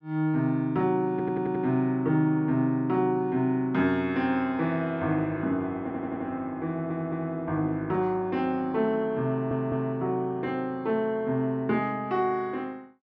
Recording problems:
stutter; 4 times, first at 1 s

